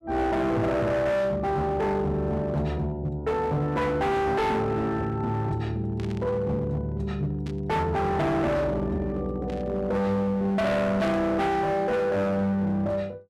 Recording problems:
distorted audio; hard clipping, signal-to-distortion ratio 8 dB
static burst; 4 times, first at 6 s; peak -13 dB vs average level

